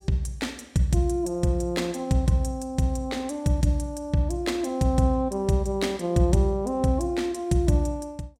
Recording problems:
none

